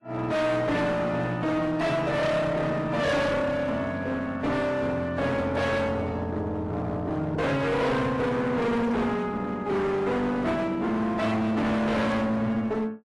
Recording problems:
lossy codec; AAC, log-spectral distance 2 dB, nothing above 11.6 kHz
distorted audio; hard clipping, uneven, signal-to-distortion ratio 6 dB

